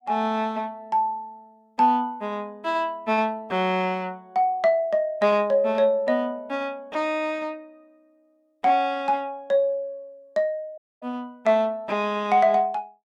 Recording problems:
audio cutting out; at 11 s

